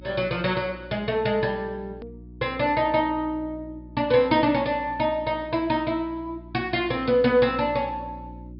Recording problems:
low-pass filter; nothing above 5.5 kHz
electrical hum; 60 Hz, harmonics up to 360 Hz, SNR 19 dB
edit click; at 2 s

